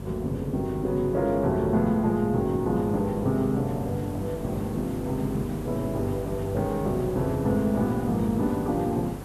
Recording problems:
hum; 50 Hz, harmonics up to 700 Hz, SNR 12 dB
hiss; slope -8 dB per octave, SNR 14 dB

